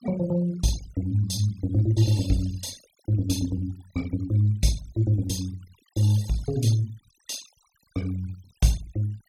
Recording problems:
denoising artefacts; signal-to-artefact ratio 20 dB

